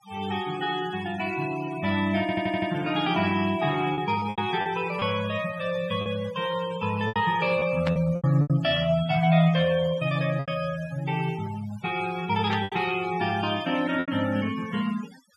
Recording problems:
denoising artefacts; signal-to-artefact ratio 16 dB
lost packets; 5% of the sound replaced, filled with repeated pitch periods
stutter; at 2 s
static burst; at 8 s and at 12 s; peak -2 dB vs average level

